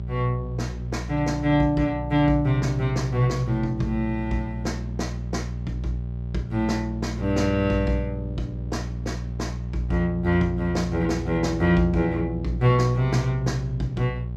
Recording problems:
hum; 60 Hz, harmonics up to 420 Hz, SNR 7 dB

